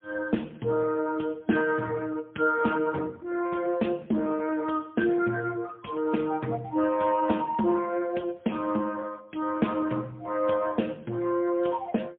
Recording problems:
phone line; 150 Hz to 3.3 kHz, AMR-NB, then MP3

